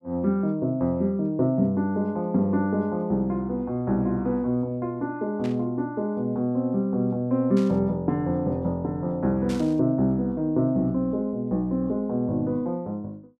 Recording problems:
static burst; at 5.5 s, at 7.5 s and at 9.5 s; peak -11 dB vs average level

